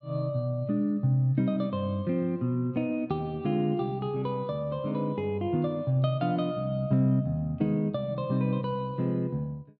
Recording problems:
none

